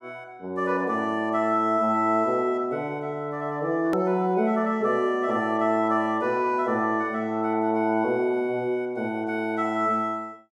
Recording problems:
click at an edit; at 4 s

